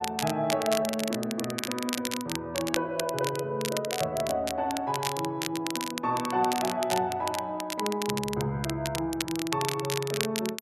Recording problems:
crackle; vinyl, SNR 5 dB

